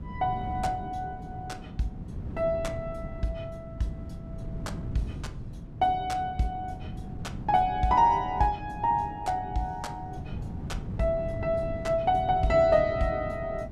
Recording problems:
wind noise; below 190 Hz, SNR 10 dB

